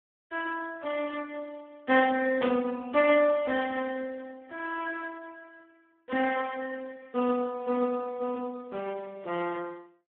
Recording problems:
phone line; 260 Hz to 2.7 kHz, Speex
static burst; at 2.5 s; peak -2 dB vs average level

